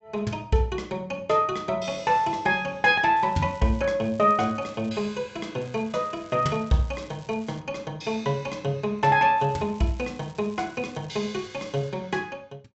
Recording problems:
treble cut off; nothing above 7.9 kHz
crackling; 4 times, first at 3 s; loose cable, SNR 27 dB

